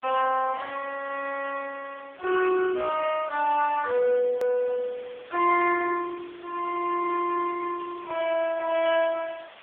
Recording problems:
telephone audio; 300 Hz to 2.8 kHz, AMR-NB
background hiss; SNR 23 dB
click at an edit; at 4.5 s

